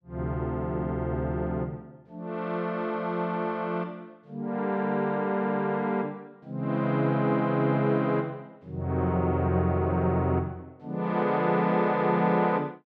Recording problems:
none

